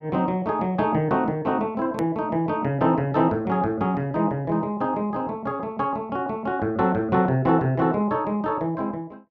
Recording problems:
edit click; at 2 s

